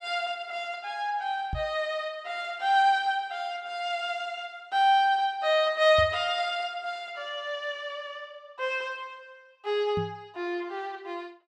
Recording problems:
microphone thump; at 1.5 s, at 6 s and at 10 s; peak -2 dB vs average level

